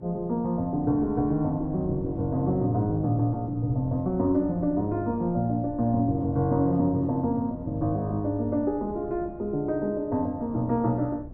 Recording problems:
wind on the microphone; below 200 Hz, SNR 17 dB

